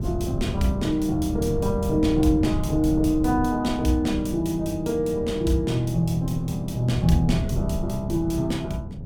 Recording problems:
wind on the microphone; below 180 Hz, SNR 7 dB

